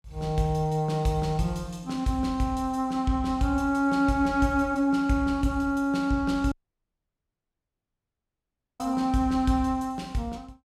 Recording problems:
dropout; at 6.5 s for 2.5 s

